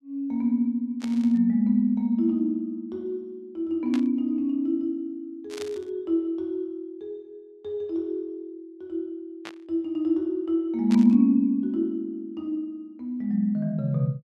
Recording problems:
burst of static; 5 times, first at 1 s; peak -8 dB vs average level

